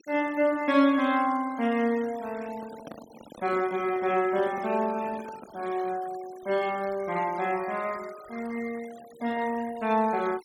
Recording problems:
denoising artefacts; signal-to-artefact ratio 20 dB
handling noise; from 2.5 to 5.5 s; peak -11 dB vs average level

